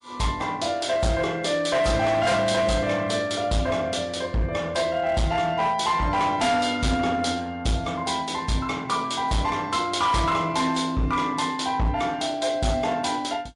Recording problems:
lossy compression; MP3, log-spectral distance 2 dB
distortion; hard clipping, signal-to-distortion ratio 11 dB

